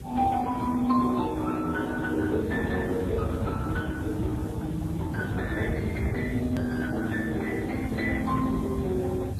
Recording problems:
lossy codec; Speex, then MP3, log-spectral distance 3 dB, nothing above 13.3 kHz
background hiss; SNR 26 dB
low-frequency rumble; below 180 Hz, SNR 5 dB
edit click; at 6.5 s

